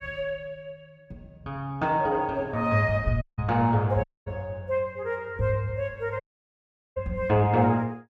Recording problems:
dropout; at 3 s, at 4 s and at 6 s for 1 s

